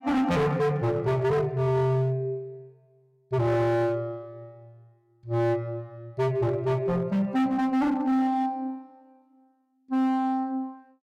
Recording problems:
distorted audio; hard clipping, signal-to-distortion ratio 7 dB

